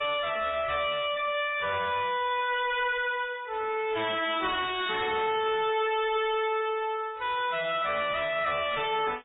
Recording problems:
lossy codec; MP3, then AAC, log-spectral distance 5 dB, nothing above 3.1 kHz
distortion; soft clipping, signal-to-distortion ratio 7 dB

